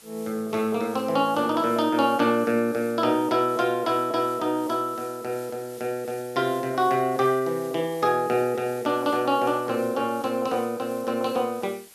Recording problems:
background hiss; slope +1 dB per octave, SNR 21 dB

